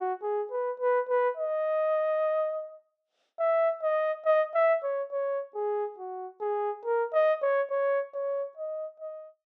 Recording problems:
none

